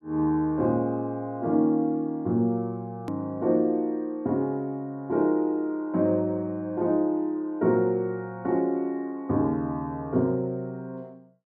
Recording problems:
hard cut with a click; at 3 s

